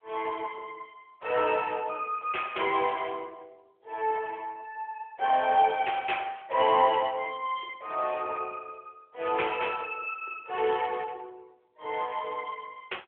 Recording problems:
telephone audio; 320 Hz to 3.5 kHz, AMR-NB

